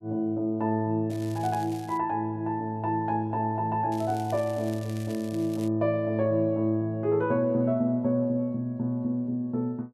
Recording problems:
crackle; at 1 s and from 4 to 5.5 s; loose cable, SNR 21 dB

